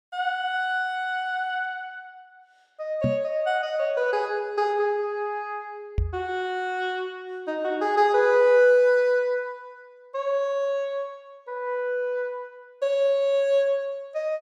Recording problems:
microphone thump; at 3 s and at 6 s; peak +2 dB vs average level

